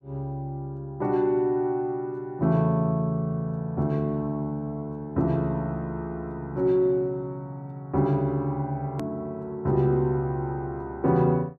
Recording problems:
click at an edit; at 9 s

